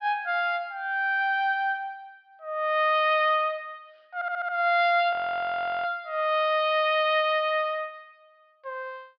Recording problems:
treble cut off; nothing above 5.5 kHz
stutter; at 4 s
frozen audio; at 5 s for 0.5 s

